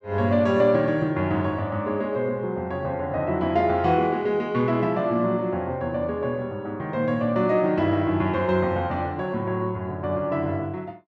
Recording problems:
none

